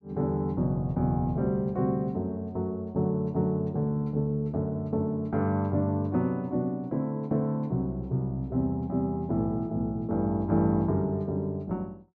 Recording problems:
none

